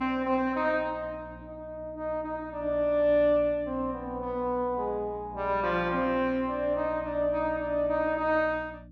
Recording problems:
mains hum; 60 Hz, harmonics up to 300 Hz, SNR 19 dB

